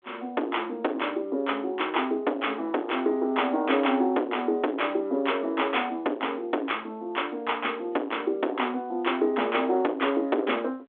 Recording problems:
phone line; 240 Hz to 3.6 kHz, G.726
distorted audio; soft clipping, signal-to-distortion ratio 10 dB

